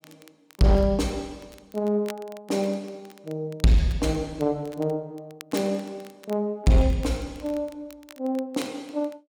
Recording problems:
distorted audio; hard clipping, signal-to-distortion ratio 11 dB
crackling; vinyl, SNR 23 dB

